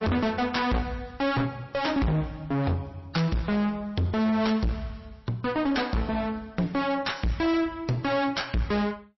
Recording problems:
lossy codec; MP3, log-spectral distance 3 dB, nothing above 5.7 kHz
distortion; hard clipping, uneven, signal-to-distortion ratio 4 dB

